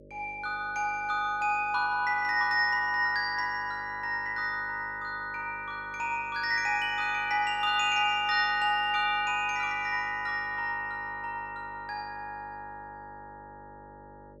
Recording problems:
hum; 50 Hz, harmonics up to 600 Hz, SNR 24 dB

